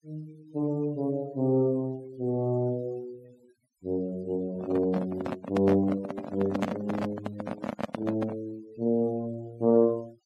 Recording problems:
noise reduction artefacts; signal-to-artefact ratio 22 dB
microphone handling noise; from 4.5 to 8.5 s; peak +2 dB vs average level

